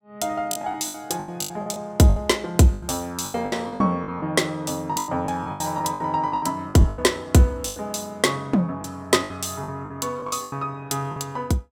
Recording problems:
lost packets; 15% of the sound replaced, filled with the last packet

